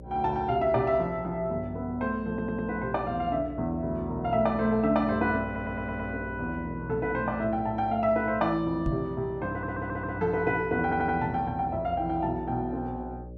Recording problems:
hum; 60 Hz, harmonics up to 600 Hz, SNR 15 dB
audio stuttering; 4 times, first at 2.5 s
microphone bump; at 9 s; peak 0 dB vs average level

